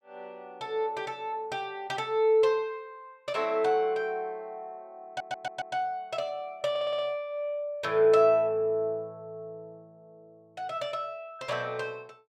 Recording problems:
stutter; at 5 s and at 6.5 s

